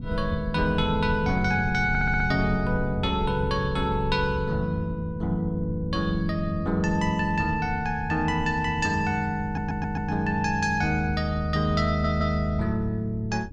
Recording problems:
low-frequency rumble; below 110 Hz, SNR 12 dB
audio stuttering; at 2 s, at 9.5 s and at 12 s

